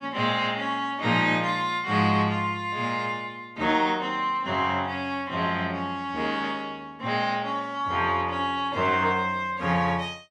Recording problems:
none

